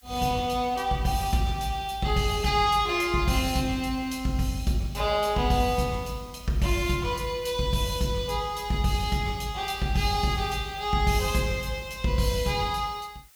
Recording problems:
background hiss; slope +2 dB per octave, SNR 27 dB

